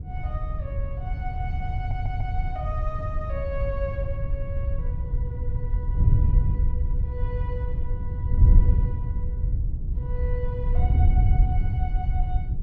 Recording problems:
wind on the microphone; below 90 Hz, SNR -12 dB
audio stuttering; at 2 s

